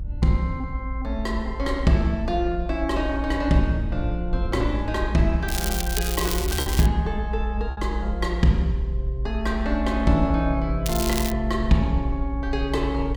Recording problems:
low-frequency rumble; below 58 Hz, strongest tone 56 Hz, SNR 4 dB
lost packets; 1% of the sound replaced, filled with repeated pitch periods
crackling; from 5.5 to 7 s and at 11 s; loose cable, SNR 5 dB

